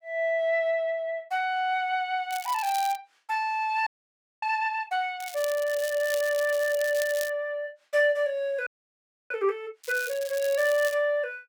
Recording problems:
crackle; at 2.5 s, from 5 to 7.5 s and from 10 to 11 s; loose cable, SNR 12 dB
frozen audio; at 4 s for 0.5 s and at 8.5 s for 0.5 s

